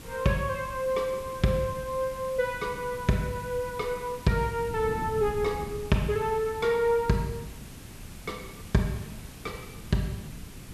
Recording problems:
background hiss; slope -2 dB per octave, SNR 19 dB
wind on the microphone; below 220 Hz, SNR 15 dB

